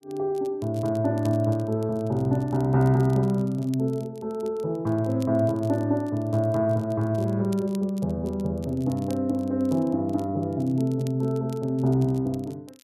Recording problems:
crackle; vinyl, SNR 27 dB

